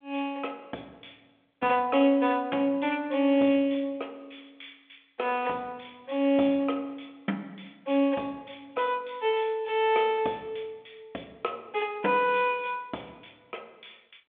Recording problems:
phone line; 300 Hz to 3.4 kHz, G.726

